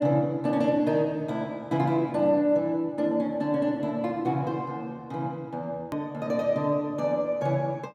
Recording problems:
hard cut with a click; at 6 s

